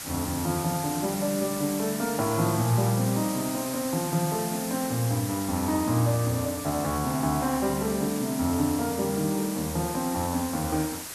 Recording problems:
background hiss; slope -1 dB per octave, SNR 7 dB

